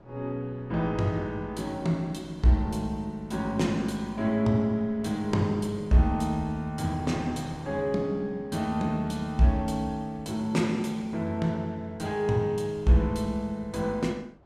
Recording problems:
wind on the microphone; below 530 Hz, SNR 24 dB

